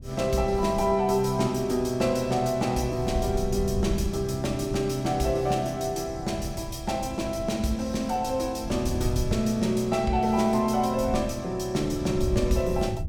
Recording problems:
wind on the microphone; below 110 Hz, SNR 10 dB

